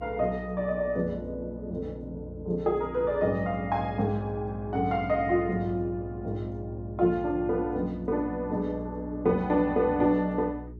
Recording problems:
mains hum; 60 Hz, harmonics up to 420 Hz, SNR 15 dB

